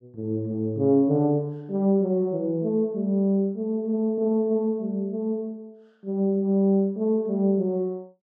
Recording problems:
none

